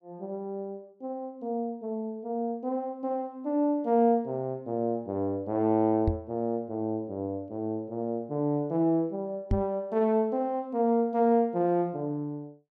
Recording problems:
knock on the microphone; at 6 s and at 9.5 s; peak +5 dB vs average level

